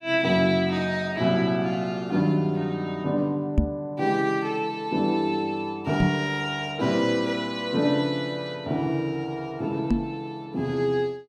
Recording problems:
knock on the microphone; at 3.5 s, at 6 s and at 10 s; peak +8 dB vs average level

